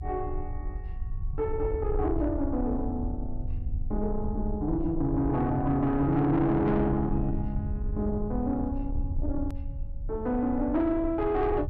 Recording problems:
distorted audio; soft clipping, signal-to-distortion ratio 11 dB
low-frequency rumble; below 84 Hz, SNR 7 dB
edit click; at 9.5 s

